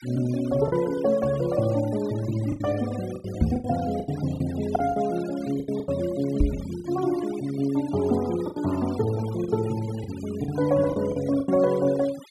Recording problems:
noise reduction artefacts; signal-to-artefact ratio 19 dB
lost packets; 9% of the sound replaced, filled with the last packet
microphone thump; at 3.5 s and at 6.5 s; peak +8 dB vs average level

